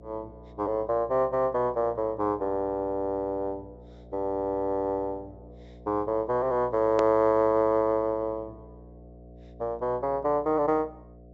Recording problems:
low-pass filter; nothing above 8 kHz
hum; 60 Hz, harmonics up to 720 Hz, SNR 22 dB
hard cut with a click; at 7 s

